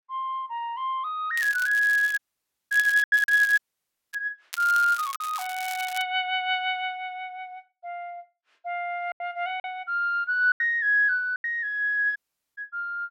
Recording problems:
lost packets; 4% of the sound replaced, filled with silence
crackling; from 1.5 to 4 s and from 4.5 to 6 s; loose cable, SNR 15 dB
dropout; at 2 s for 0.5 s, at 3.5 s for 0.5 s and at 12 s

